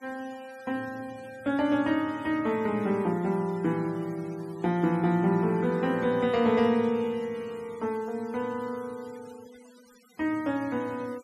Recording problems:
noise reduction artefacts; signal-to-artefact ratio 25 dB

